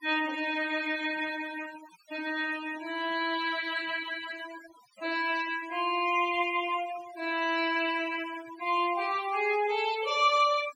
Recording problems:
denoising artefacts; signal-to-artefact ratio 15 dB

